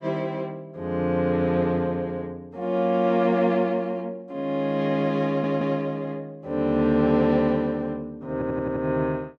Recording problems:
stutter; at 5.5 s and at 8.5 s

